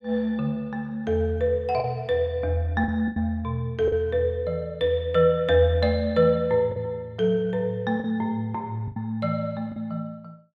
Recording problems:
lost packets; 4% of the sound replaced, filled with the last packet

